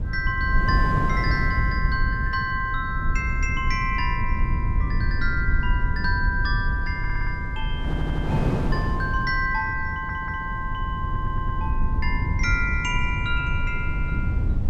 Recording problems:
rumble; below 88 Hz, SNR 0 dB
wind noise; below 350 Hz, SNR 7 dB
audio stuttering; 4 times, first at 7 s

